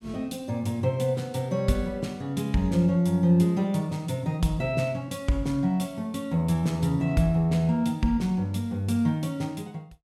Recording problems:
none

